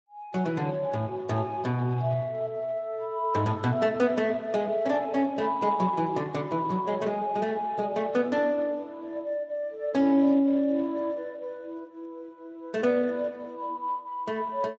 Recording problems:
codec artefacts; Speex, log-spectral distance 2 dB

